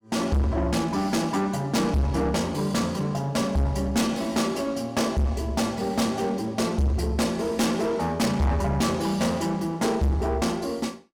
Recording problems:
distortion; soft clipping, signal-to-distortion ratio 7 dB

